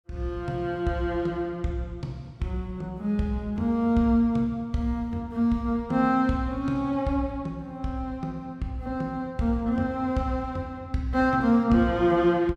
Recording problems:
none

